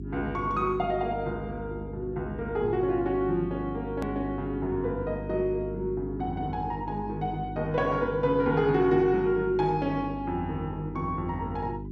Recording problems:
electrical hum; 50 Hz, harmonics up to 400 Hz, SNR 9 dB
hard cut with a click; at 4 s

